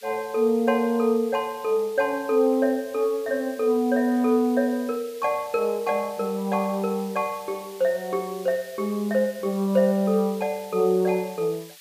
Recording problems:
hiss; SNR 21 dB

